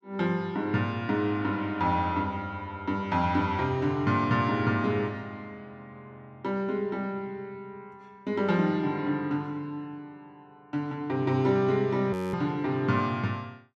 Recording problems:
frozen audio; at 12 s

